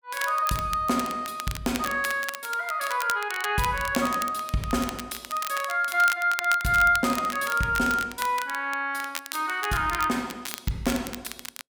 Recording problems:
crackling; vinyl, SNR 11 dB

